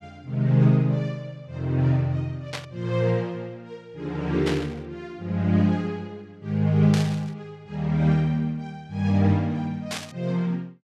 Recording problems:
burst of static; 4 times, first at 2.5 s; peak -3 dB vs average level

